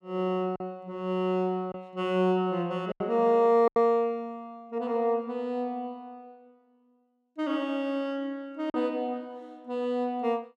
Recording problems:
packet loss; 3% of the sound replaced, filled with silence

